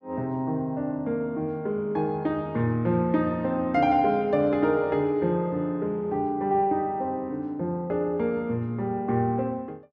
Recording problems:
none

